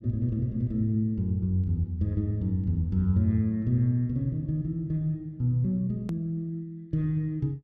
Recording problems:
click at an edit; at 6 s

